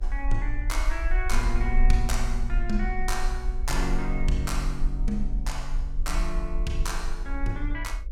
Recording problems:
hum; 50 Hz, harmonics up to 600 Hz, SNR 26 dB
rumble; below 40 Hz, strongest tone 24 Hz, SNR -1 dB

